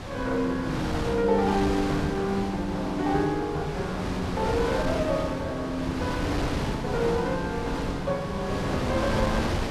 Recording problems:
wind on the microphone; below 970 Hz, SNR 4 dB

